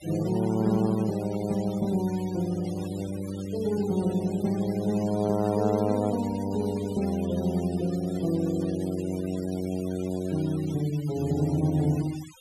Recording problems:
noise reduction artefacts; signal-to-artefact ratio 18 dB

